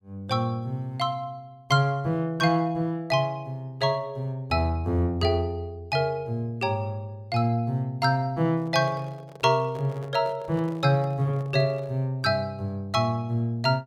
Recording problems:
handling noise; from 8.5 to 12 s; peak -13 dB vs average level

